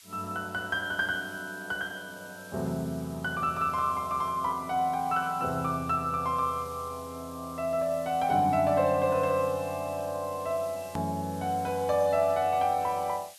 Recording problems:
hiss; slope +5 dB per octave, SNR 21 dB
edit click; at 11 s

